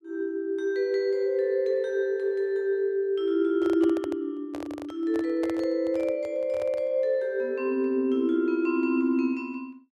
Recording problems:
handling noise; from 3.5 to 7 s; peak -7 dB vs average level

